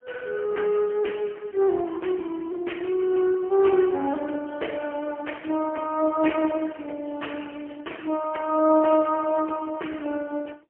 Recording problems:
phone line; 240 Hz to 3.1 kHz, AMR-NB, then MP3

